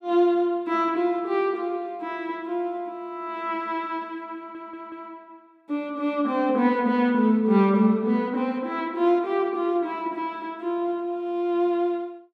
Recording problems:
stutter; at 4.5 s

